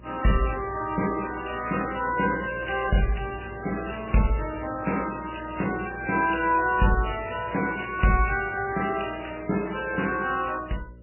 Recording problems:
lossy codec; MP3, then AAC, log-spectral distance 9 dB, nothing above 2.9 kHz
mains hum; 60 Hz, harmonics up to 600 Hz, SNR 19 dB

